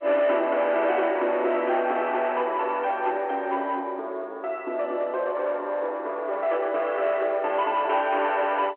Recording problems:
phone line; 280 Hz to 3.6 kHz, G.711
distortion; soft clipping, signal-to-distortion ratio 11 dB

